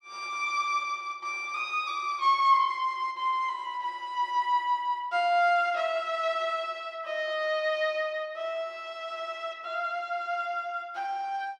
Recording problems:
none

